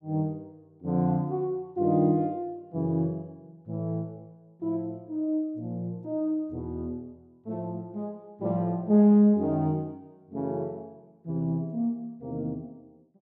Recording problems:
none

